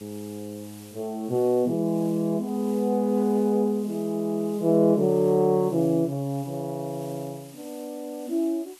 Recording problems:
background hiss; slope +1 dB per octave, SNR 24 dB

